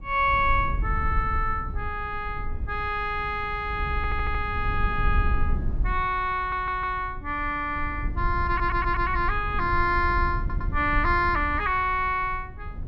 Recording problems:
low-frequency rumble; below 72 Hz, SNR 6 dB
stutter; 4 times, first at 4 s

